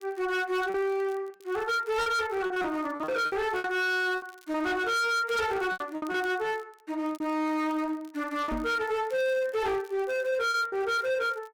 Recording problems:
distorted audio; hard clipping, signal-to-distortion ratio 8 dB
crackling; vinyl, SNR 29 dB
lost packets; 8% of the sound replaced, filled with repeated pitch periods
microphone thump; at 8.5 s; peak -2 dB vs average level

